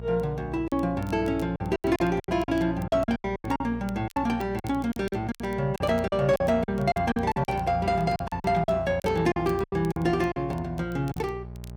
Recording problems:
hum; 60 Hz, harmonics up to 1 kHz, SNR 13 dB
crackle; vinyl, SNR 27 dB
lost packets; 14% of the sound replaced, filled with silence

